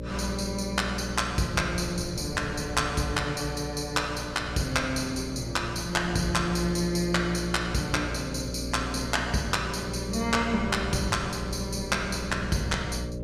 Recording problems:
hum; 60 Hz, harmonics up to 600 Hz, SNR 8 dB
wind on the microphone; below 200 Hz, SNR 15 dB

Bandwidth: 15.5 kHz